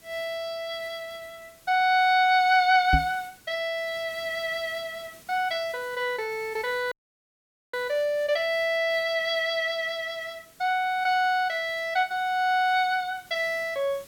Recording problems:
hiss; SNR 25 dB
knock on the microphone; at 3 s; peak +5 dB vs average level
audio cutting out; at 7 s for 1 s

